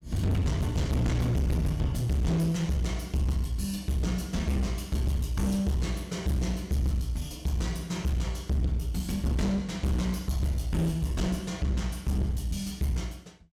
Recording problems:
distortion; hard clipping, uneven, signal-to-distortion ratio 6 dB

